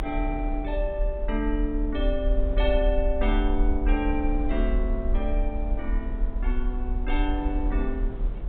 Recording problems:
treble cut off; nothing above 4 kHz
low-frequency rumble; below 44 Hz, strongest tone 38 Hz, SNR -1 dB
wind noise; below 450 Hz, SNR 12 dB

